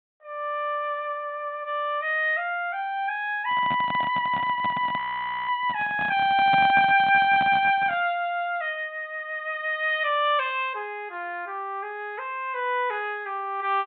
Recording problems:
low-pass filter; nothing above 4 kHz
handling noise; from 3.5 to 8 s; peak -2 dB vs average level
frozen audio; at 5 s for 0.5 s

